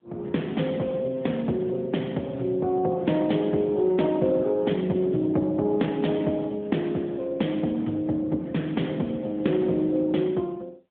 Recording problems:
telephone audio; 170 Hz to 3.5 kHz, AMR-NB

